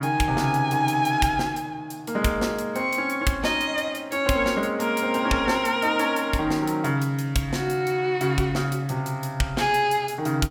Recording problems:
none

